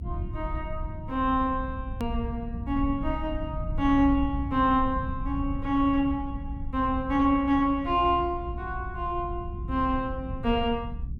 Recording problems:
low-frequency rumble; below 96 Hz, SNR 8 dB
edit click; at 2 s

